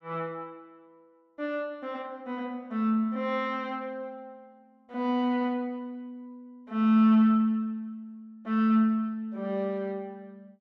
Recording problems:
none

